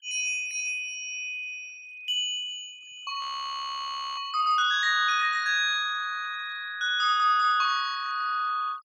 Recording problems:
denoising artefacts; signal-to-artefact ratio 25 dB
frozen audio; at 3 s for 1 s

